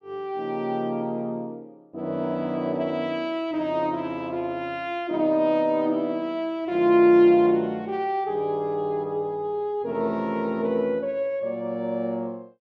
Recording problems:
none

